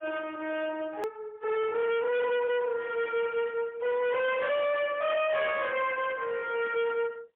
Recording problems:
telephone audio; 370 Hz to 3.6 kHz, AMR-NB, then MP3
distortion; hard clipping, uneven, signal-to-distortion ratio 5 dB
click at an edit; at 1 s

